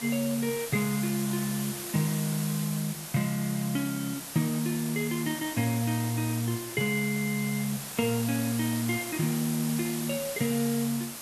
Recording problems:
background hiss; slope -1 dB per octave, SNR 7 dB

